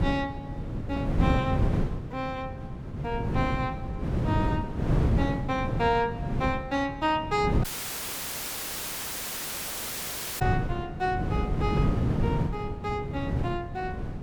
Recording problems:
wind noise; below 240 Hz, SNR -1 dB
audio cutting out; at 7.5 s for 3 s

